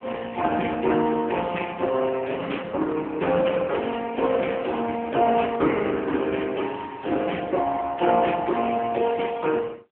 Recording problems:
telephone audio; 280 Hz to 3.2 kHz, AMR-NB

